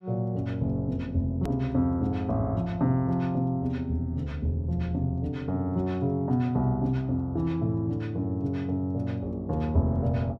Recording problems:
click at an edit; at 1.5 s

